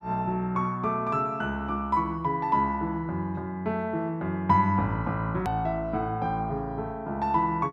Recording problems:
click at an edit; at 5.5 s

